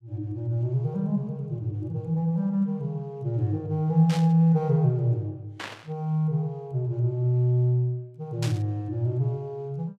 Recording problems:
static burst; at 4 s, at 5.5 s and at 8.5 s; peak -5 dB vs average level

